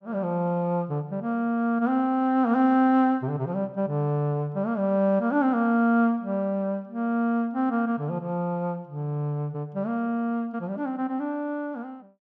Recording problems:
none

